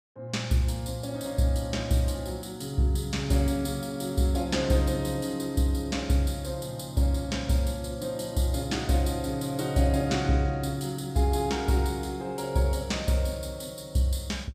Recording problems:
none

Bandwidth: 15 kHz